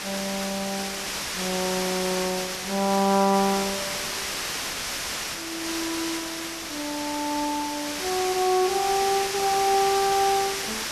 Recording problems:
background hiss; slope 0 dB per octave, SNR 3 dB

